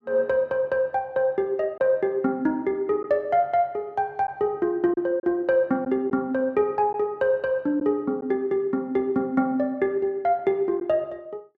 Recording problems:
packet loss; 1.4% of the sound replaced, filled with silence

